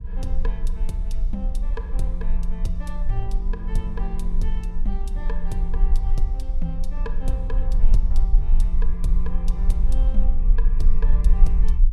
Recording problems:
rumble; below 40 Hz, strongest tone 18 Hz, SNR -9 dB

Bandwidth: 14.5 kHz